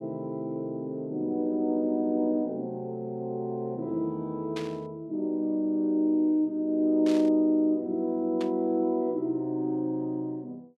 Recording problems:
burst of static; at 4.5 s, at 7 s and at 8.5 s; peak -7 dB vs average level

